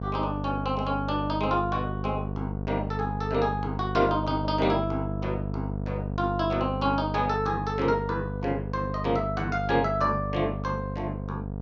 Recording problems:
hum; 50 Hz, harmonics up to 950 Hz, SNR 4 dB

